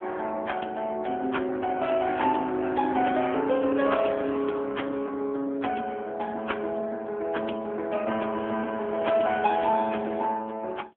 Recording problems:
phone line; 240 Hz to 3.4 kHz, AMR-NB

